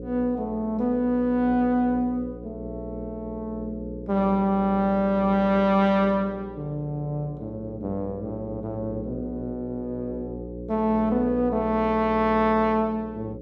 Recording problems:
hum; 60 Hz, harmonics up to 540 Hz, SNR 12 dB

